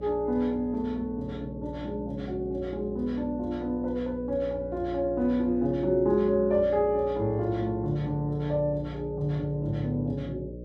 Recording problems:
hum; 60 Hz, harmonics up to 600 Hz, SNR 12 dB

